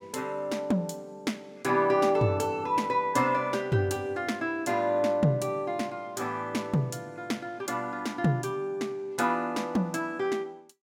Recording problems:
none

